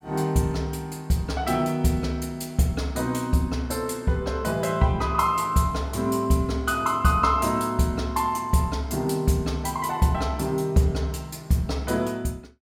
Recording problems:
none

